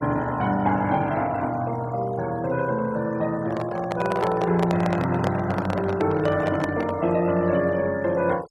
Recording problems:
noise reduction artefacts; signal-to-artefact ratio 20 dB
handling noise; from 3.5 to 7 s; peak 0 dB vs average level

